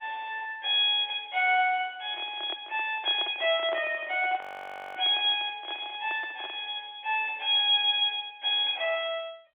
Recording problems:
telephone audio; 300 Hz to 3.6 kHz, G.711
microphone handling noise; from 2 to 6.5 s; peak -7 dB vs average level
audio freezing; at 4.5 s for 0.5 s

